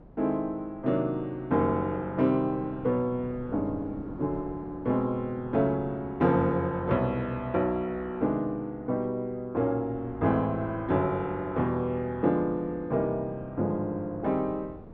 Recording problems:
wind noise; below 410 Hz, SNR 19 dB

